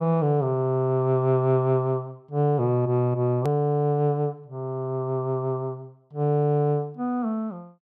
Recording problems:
hard cut with a click; at 3.5 s

